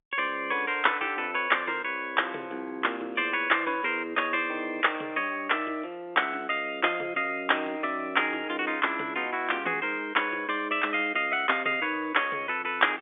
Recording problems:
phone line; 260 Hz to 3.6 kHz, G.711

